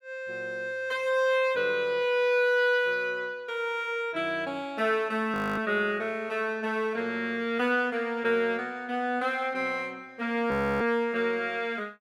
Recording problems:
frozen audio; at 5.5 s and at 11 s

